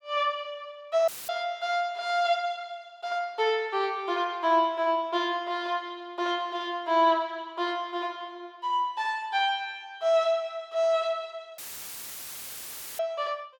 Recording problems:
audio cutting out; at 1 s and at 12 s for 1.5 s; filled with static

